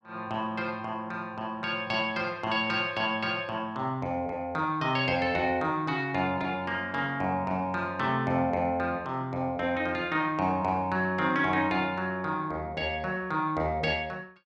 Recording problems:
none

